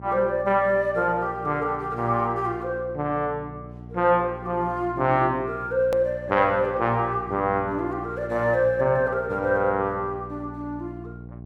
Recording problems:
hum; 60 Hz, harmonics up to 780 Hz, SNR 16 dB
hard cut with a click; at 6 s

